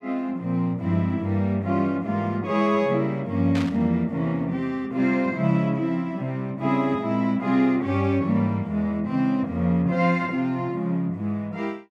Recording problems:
static burst; at 3.5 s; peak -6 dB vs average level

